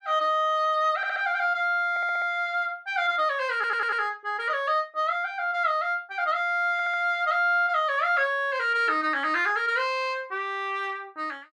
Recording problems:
stutter; 4 times, first at 1 s

